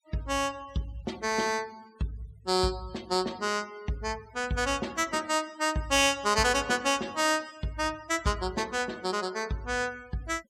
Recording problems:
denoising artefacts; signal-to-artefact ratio 23 dB

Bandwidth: 16.5 kHz